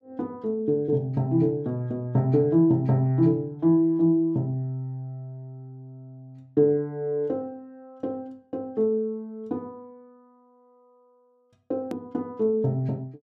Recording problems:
click at an edit; at 12 s

